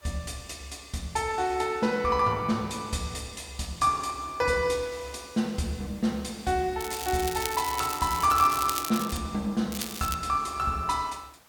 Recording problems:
hiss; SNR 26 dB
crackling; from 7 to 9 s and at 9.5 s; loose cable, SNR 7 dB

